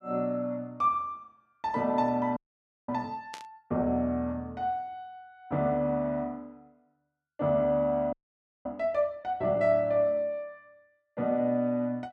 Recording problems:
audio freezing; at 2.5 s for 0.5 s and at 8 s for 0.5 s
static burst; at 3.5 s; peak -9 dB vs average level

